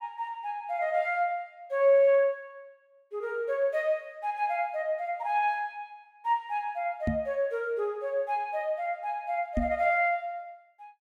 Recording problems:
microphone bump; at 7 s and at 9.5 s; peak +3 dB vs average level

